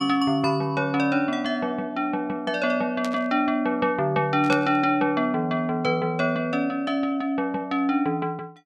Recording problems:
burst of static; at 3 s and at 4.5 s; peak -5 dB vs average level

